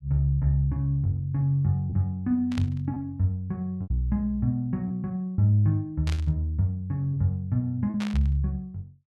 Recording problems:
lost packets; 3% of the sound replaced, filled with repeated pitch periods
burst of static; at 2.5 s, at 6 s and at 8 s; peak -7 dB vs average level

